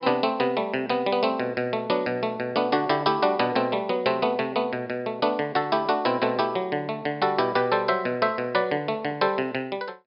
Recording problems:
treble cut off; nothing above 5.5 kHz

